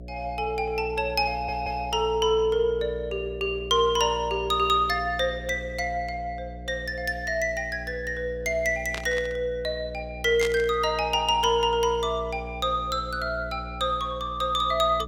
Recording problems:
electrical hum; 60 Hz, harmonics up to 720 Hz, SNR 14 dB
stutter; at 1.5 s
burst of static; at 9 s and at 10 s; peak -3 dB vs average level

